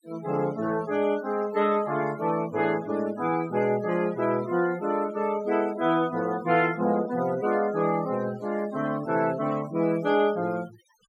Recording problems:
noise reduction artefacts; signal-to-artefact ratio 19 dB

